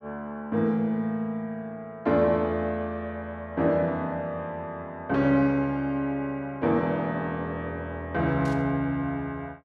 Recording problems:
static burst; at 8.5 s; peak -15 dB vs average level

